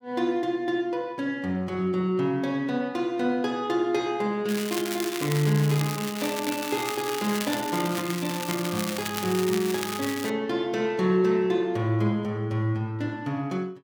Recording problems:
crackling; from 4.5 to 10 s; loose cable, SNR 7 dB

